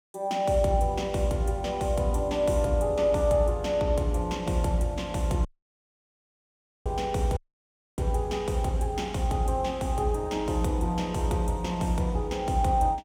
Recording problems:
audio cutting out; at 5.5 s for 1.5 s and at 7.5 s for 0.5 s

